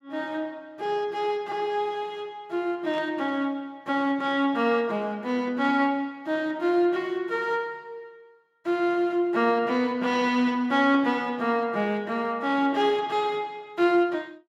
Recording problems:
burst of static; at 3 s; peak -15 dB vs average level

